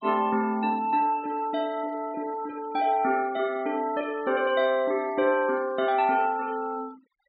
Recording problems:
treble missing; nothing above 4.7 kHz
noise reduction artefacts; signal-to-artefact ratio 23 dB

